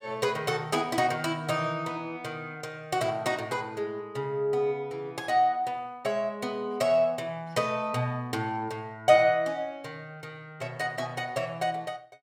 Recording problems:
none

